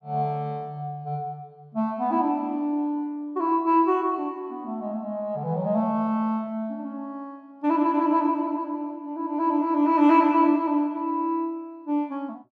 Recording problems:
none

